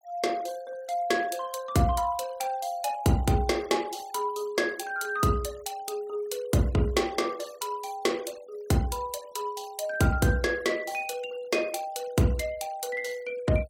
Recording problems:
denoising artefacts; signal-to-artefact ratio 22 dB

